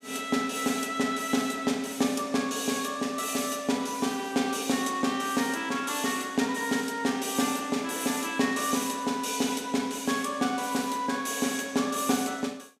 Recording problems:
none

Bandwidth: 15 kHz